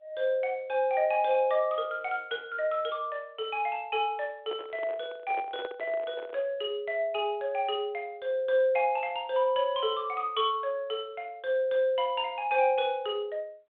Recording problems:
telephone audio; 260 Hz to 3.5 kHz, G.726
handling noise; from 4.5 to 6.5 s; peak -6 dB vs average level

